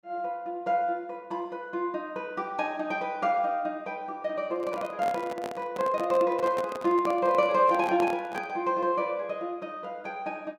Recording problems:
handling noise; from 4.5 to 8.5 s; peak -2 dB vs average level

